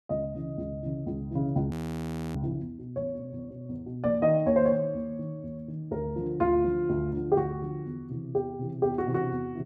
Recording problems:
audio freezing; at 1.5 s for 0.5 s

